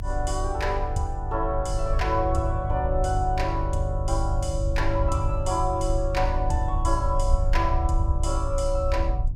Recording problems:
electrical hum; 50 Hz, harmonics up to 350 Hz, SNR 6 dB
rumble; below 66 Hz, strongest tone 30 Hz, SNR 2 dB

